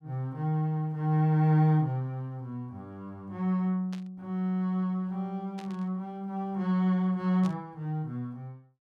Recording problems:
burst of static; at 4 s, at 5.5 s and at 7.5 s; peak -13 dB vs average level

